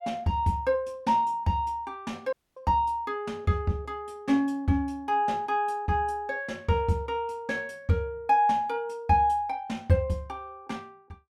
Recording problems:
dropout; at 2.5 s

